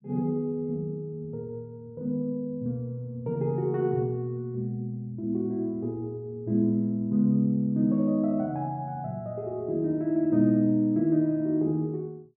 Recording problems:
none

